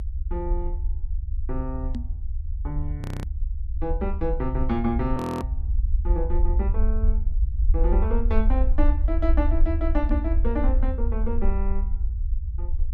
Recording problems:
rumble; below 58 Hz, SNR -4 dB
microphone bump; at 2 s and at 10 s; peak +2 dB vs average level
frozen audio; at 3 s and at 5 s

